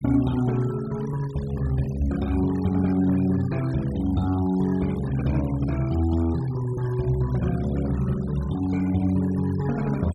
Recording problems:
noise reduction artefacts; signal-to-artefact ratio 20 dB

